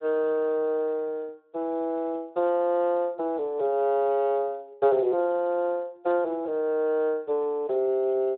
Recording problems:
phone line; 320 Hz to 3.5 kHz, Speex

